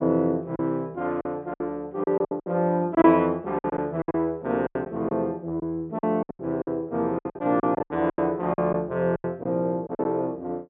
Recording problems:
treble missing; nothing above 3.8 kHz
lost packets; 13% of the sound replaced, filled with silence

